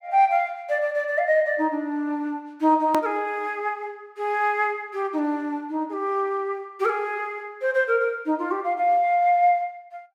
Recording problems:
click at an edit; at 3 s

